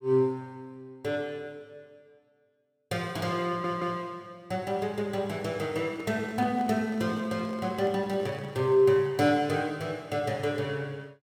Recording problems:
audio stuttering; at 3.5 s
handling noise; from 6 to 9 s; peak -10 dB vs average level

